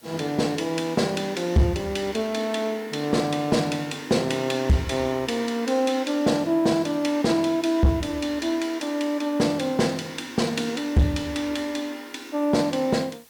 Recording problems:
distorted audio; hard clipping, signal-to-distortion ratio 12 dB
background hiss; slope 0 dB per octave, SNR 27 dB

